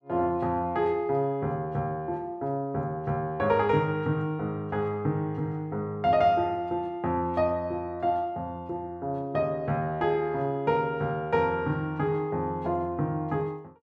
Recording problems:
none

